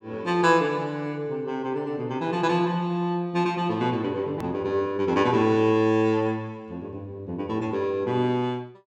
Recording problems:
hard cut with a click; at 4.5 s

